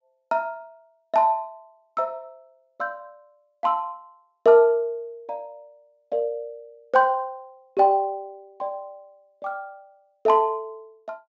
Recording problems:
low-pass filter; nothing above 8 kHz

